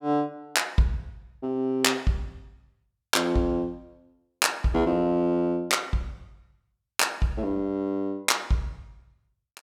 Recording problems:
none

